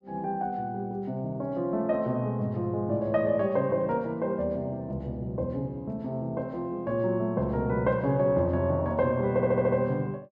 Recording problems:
audio stuttering; at 9.5 s

